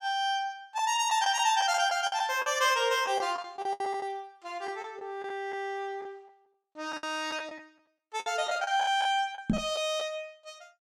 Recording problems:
packet loss; 10% of the sound replaced, filled with the last packet
microphone thump; at 9.5 s; peak +7 dB vs average level

